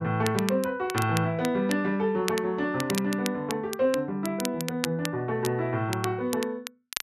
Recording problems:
crackle; vinyl, SNR 10 dB

